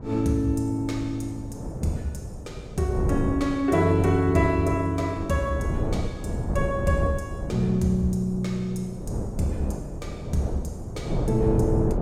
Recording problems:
wind on the microphone; below 300 Hz, SNR 6 dB

